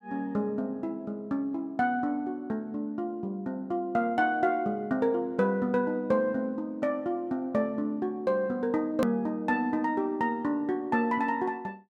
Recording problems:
click at an edit; at 9 s

